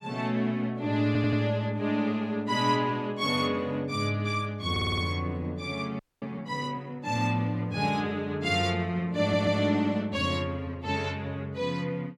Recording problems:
stutter; at 1 s, at 4.5 s and at 9 s
audio freezing; at 6 s

